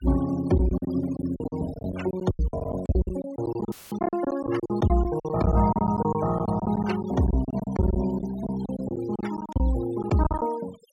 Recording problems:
noise reduction artefacts; signal-to-artefact ratio 17 dB
lost packets; 17% of the sound replaced, filled with silence
audio cutting out; at 3.5 s; filled with static

